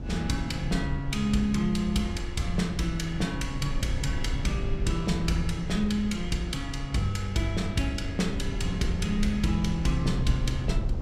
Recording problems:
rumble; below 110 Hz, SNR 5 dB

